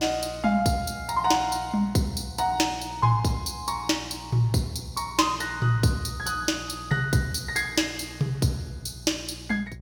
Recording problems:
electrical hum; 60 Hz, harmonics up to 600 Hz, SNR 18 dB

